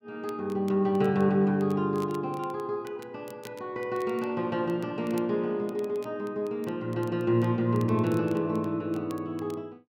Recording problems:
crackle; vinyl, SNR 26 dB

